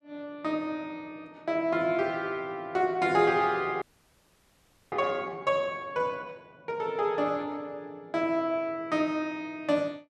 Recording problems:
frozen audio; at 4 s for 1 s

